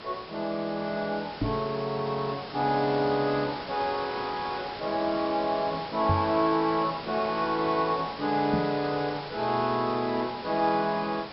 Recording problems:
treble cut off; nothing above 5.4 kHz
background hiss; slope -3 dB per octave, SNR 11 dB
knock on the microphone; at 1.5 s, at 6 s and at 8.5 s; peak +4 dB vs average level

